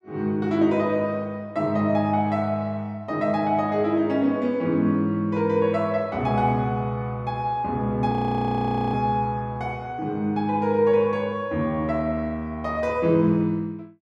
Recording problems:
frozen audio; at 8 s for 1 s

